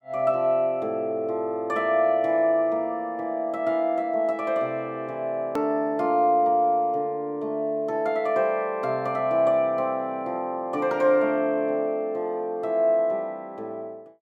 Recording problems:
click at an edit; at 5.5 s

